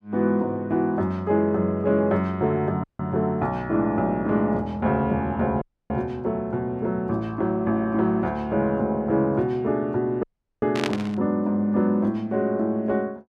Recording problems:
audio cutting out; at 3 s, at 5.5 s and at 10 s
static burst; at 11 s; peak 0 dB vs average level

